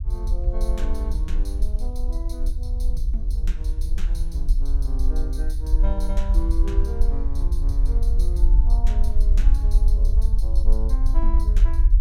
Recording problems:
low-frequency rumble; below 48 Hz, SNR -12 dB

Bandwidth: 16 kHz